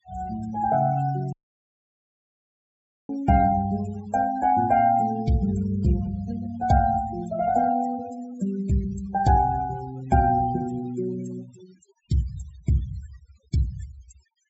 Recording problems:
treble missing; nothing above 8 kHz
noise reduction artefacts; signal-to-artefact ratio 19 dB
audio cutting out; at 1.5 s for 2 s

